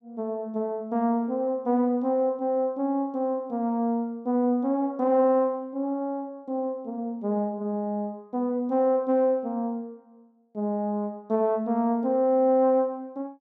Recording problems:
none

